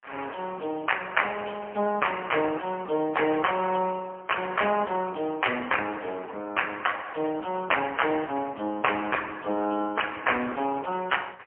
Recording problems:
telephone audio; 240 Hz to 3.1 kHz, AMR-NB, then MP3

